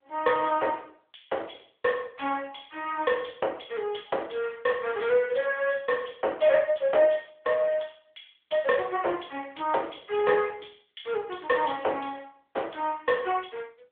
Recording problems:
telephone audio; 340 Hz to 3.4 kHz, AMR-NB

